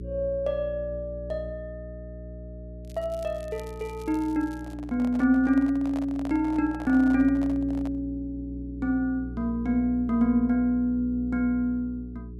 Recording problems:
hum; 60 Hz, harmonics up to 420 Hz, SNR 13 dB
crackling; from 3 to 4.5 s; loose cable, SNR 28 dB
handling noise; from 4.5 to 8 s; peak -10 dB vs average level

